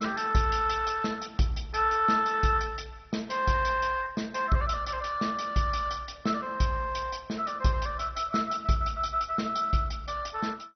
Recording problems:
lossy codec; MP2, log-spectral distance 6 dB, nothing above 5.8 kHz

